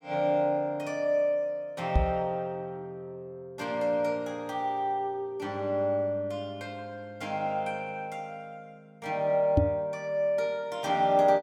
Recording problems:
knock on the microphone; at 2 s and at 9.5 s; peak +9 dB vs average level

